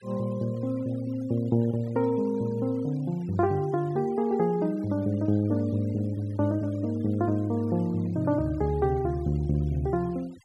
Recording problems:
denoising artefacts; signal-to-artefact ratio 26 dB

